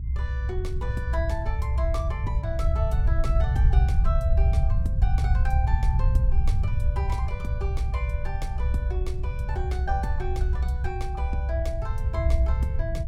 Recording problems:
low-frequency rumble; below 78 Hz, SNR -9 dB

